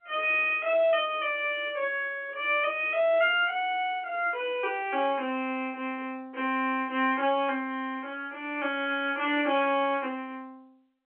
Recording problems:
phone line; 280 Hz to 3.2 kHz, G.711

